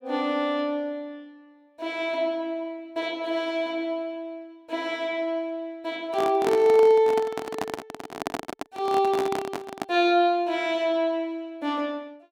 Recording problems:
handling noise; from 6 to 10 s; peak +1 dB vs average level

